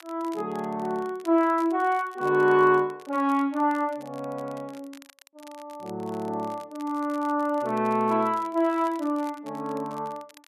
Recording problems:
crackling; vinyl, SNR 26 dB

